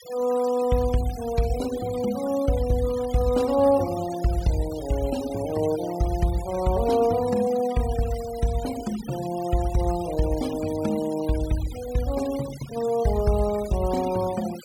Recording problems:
noise reduction artefacts; signal-to-artefact ratio 17 dB

